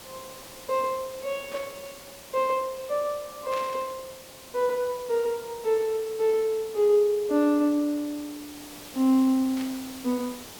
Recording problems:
hiss; slope -2 dB per octave, SNR 17 dB
burst of static; at 1.5 s, at 3.5 s and at 9.5 s; peak -10 dB vs average level

